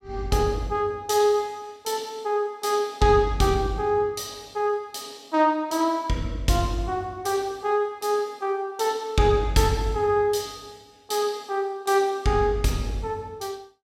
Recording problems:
none

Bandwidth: 16 kHz